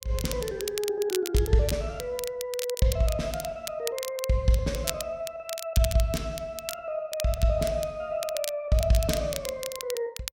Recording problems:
crackling; vinyl, SNR 9 dB

